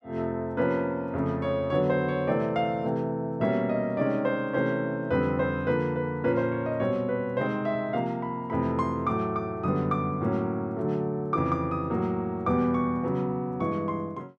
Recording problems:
none

